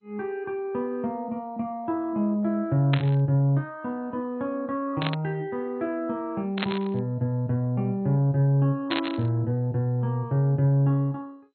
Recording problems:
lossy codec; MP2, log-spectral distance 2 dB
static burst; 4 times, first at 3 s; peak +2 dB vs average level

